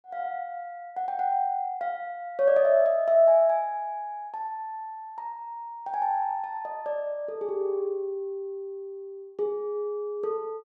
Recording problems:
none

